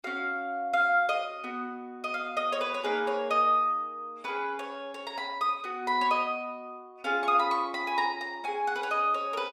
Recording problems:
none

